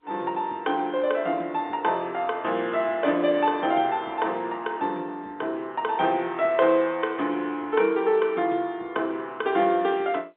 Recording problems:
telephone audio; 240 Hz to 3.8 kHz, G.711

